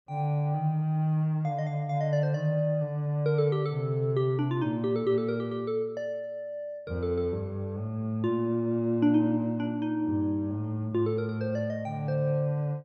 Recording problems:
none

